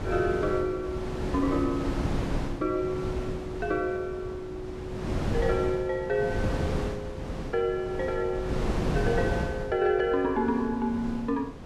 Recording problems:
wind noise; below 410 Hz, SNR 4 dB

